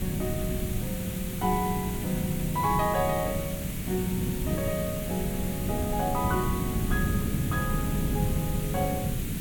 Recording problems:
hiss; SNR 7 dB
wind on the microphone; below 210 Hz, SNR 1 dB

